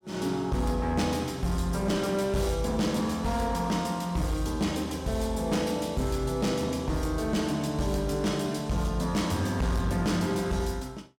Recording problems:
distorted audio; hard clipping, uneven, signal-to-distortion ratio 12 dB

